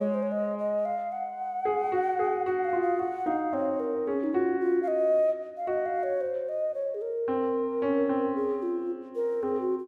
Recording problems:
none

